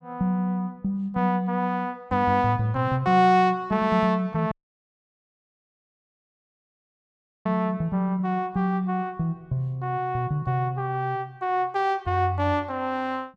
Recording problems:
audio cutting out; at 4.5 s for 3 s

